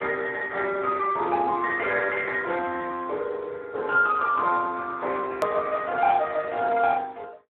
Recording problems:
telephone audio; 320 Hz to 2.8 kHz, Speex
edit click; at 5.5 s

